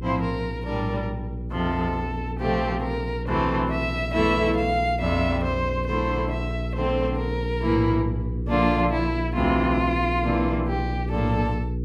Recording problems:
hum; 60 Hz, harmonics up to 480 Hz, SNR 5 dB

